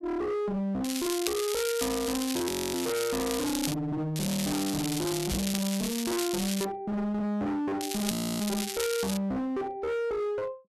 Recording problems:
distorted audio; hard clipping, uneven, signal-to-distortion ratio 6 dB
crackle; from 1 to 3.5 s, from 4 to 6.5 s and from 8 to 9 s; loose cable, SNR 4 dB
audio freezing; at 2.5 s and at 8 s
microphone bump; at 5.5 s; peak +2 dB vs average level

